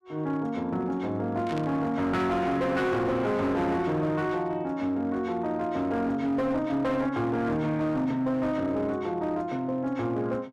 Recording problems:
distortion; hard clipping, signal-to-distortion ratio 11 dB
burst of static; at 1.5 s; peak -10 dB vs average level

